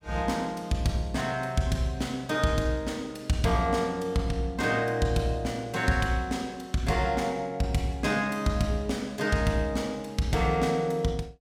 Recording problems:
none

